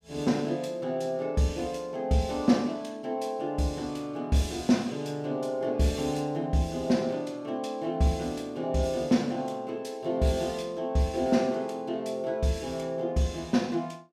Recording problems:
none

